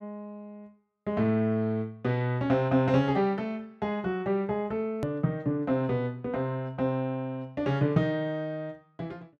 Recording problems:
hard cut with a click; at 5 s

